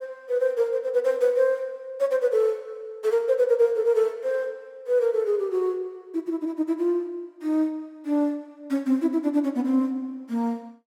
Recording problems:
none

